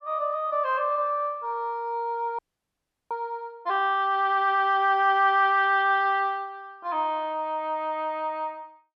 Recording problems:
frozen audio; at 2.5 s for 0.5 s

